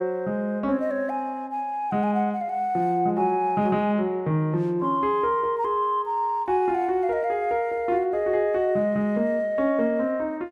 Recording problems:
none

